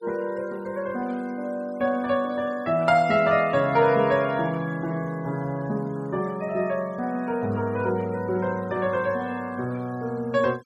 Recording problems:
denoising artefacts; signal-to-artefact ratio 25 dB

